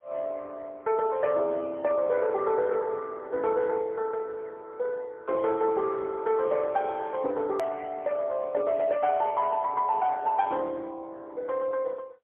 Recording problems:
telephone audio; 300 Hz to 3.2 kHz, AMR-NB, then MP3
click at an edit; at 7.5 s

